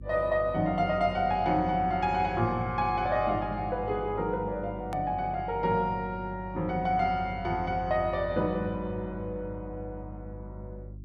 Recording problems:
electrical hum; 50 Hz, harmonics up to 350 Hz, SNR 14 dB
hard cut with a click; at 5 s

